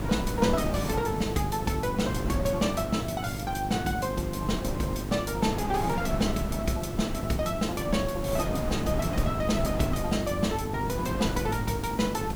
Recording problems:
hum; 50 Hz, harmonics up to 900 Hz, SNR 8 dB
background hiss; SNR 18 dB
wind on the microphone; below 350 Hz, SNR 5 dB

